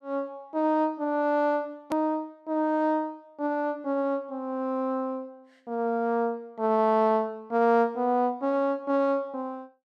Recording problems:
hard cut with a click; at 2 s

